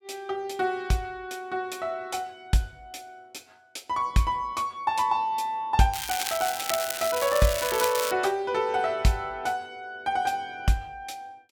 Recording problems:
crackling; from 6 to 8 s; loose cable, SNR 4 dB

